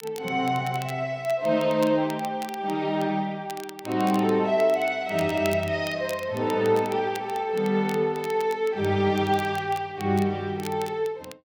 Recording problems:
crackle; vinyl, SNR 19 dB

